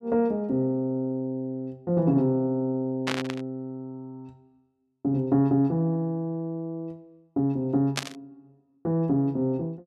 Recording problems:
burst of static; at 3 s and at 8 s; peak +4 dB vs average level

